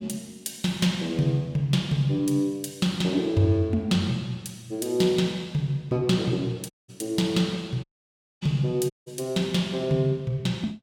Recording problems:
audio cutting out; at 6.5 s, at 8 s for 0.5 s and at 9 s

